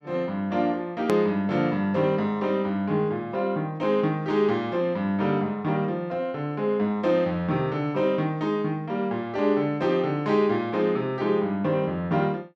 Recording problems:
hard cut with a click; at 1 s

